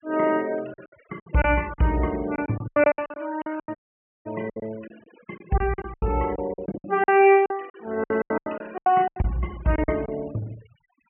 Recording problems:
low-pass filter; nothing above 3 kHz
noise reduction artefacts; signal-to-artefact ratio 23 dB
lost packets; 17% of the sound replaced, filled with silence
audio cutting out; at 4 s for 0.5 s

